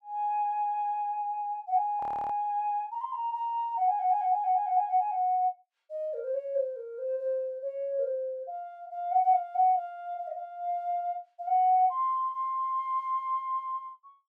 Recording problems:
audio freezing; at 2 s

